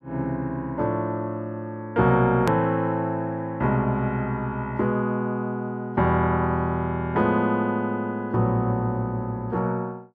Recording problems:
click at an edit; at 2.5 s

